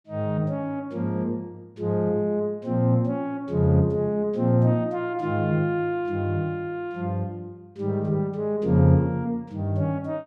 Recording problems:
none

